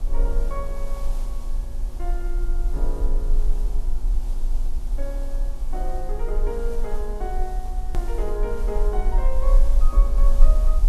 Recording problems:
electrical hum; 60 Hz, harmonics up to 1.2 kHz, SNR 13 dB
hiss; SNR 12 dB
rumble; below 38 Hz, strongest tone 24 Hz, SNR -8 dB
hard cut with a click; at 8 s

